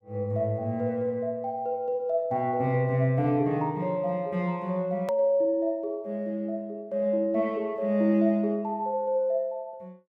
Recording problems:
click at an edit; at 5 s

